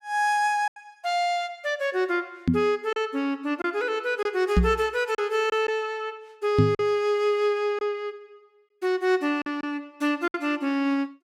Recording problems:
packet loss; 4% of the sound replaced, filled with silence
knock on the microphone; at 2.5 s, at 4.5 s and at 6.5 s; peak +9 dB vs average level

